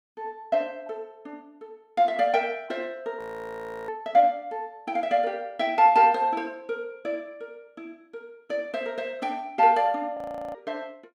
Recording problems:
frozen audio; at 3 s for 0.5 s and at 10 s

